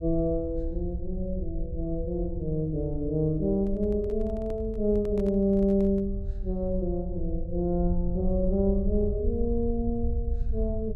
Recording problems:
rumble; below 68 Hz, SNR 6 dB
microphone handling noise; from 3.5 to 6 s; peak -11 dB vs average level

